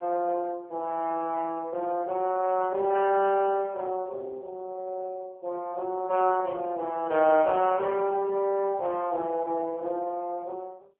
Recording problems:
phone line; 240 Hz to 3 kHz, AMR-NB

